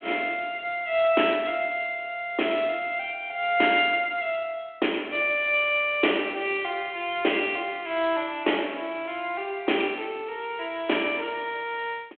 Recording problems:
telephone audio; 280 Hz to 3.4 kHz, G.726

